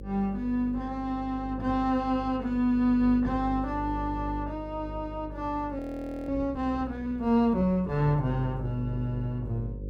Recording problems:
hum; 50 Hz, harmonics up to 550 Hz, SNR 11 dB
frozen audio; at 6 s

